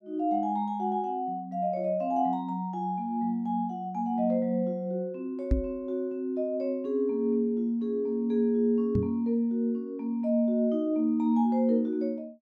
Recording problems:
microphone bump; at 5.5 s and at 9 s; peak +6 dB vs average level

